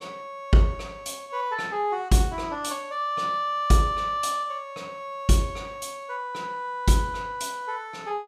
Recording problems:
none

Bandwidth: 14.5 kHz